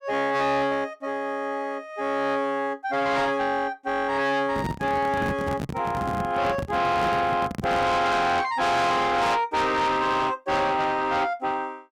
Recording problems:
distortion; soft clipping, signal-to-distortion ratio 8 dB
handling noise; from 4.5 to 8 s; peak -2 dB vs average level

